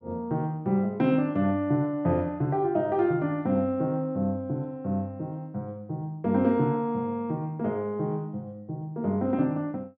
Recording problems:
treble missing; nothing above 8 kHz

